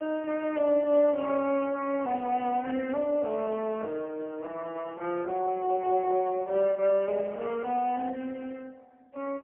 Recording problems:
telephone audio; 220 Hz to 3.5 kHz, AMR-NB, then MP3

